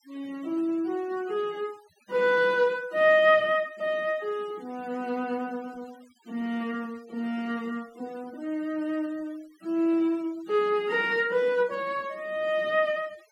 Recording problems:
denoising artefacts; signal-to-artefact ratio 26 dB

